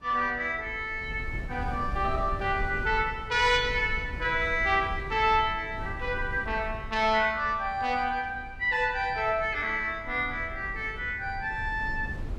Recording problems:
wind noise; below 110 Hz, SNR 13 dB

